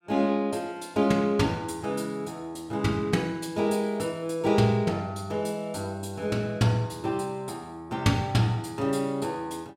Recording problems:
none

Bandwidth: 16 kHz